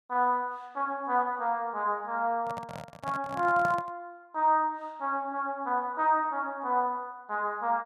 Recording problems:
handling noise; from 2.5 to 4 s; peak -3 dB vs average level

